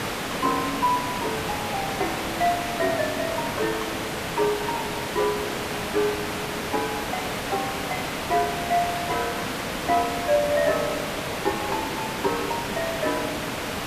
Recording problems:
hiss; slope -4 dB per octave, SNR 1 dB

